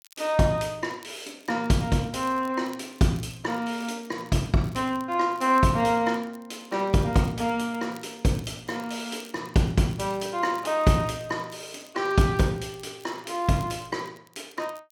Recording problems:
crackle; vinyl, SNR 27 dB

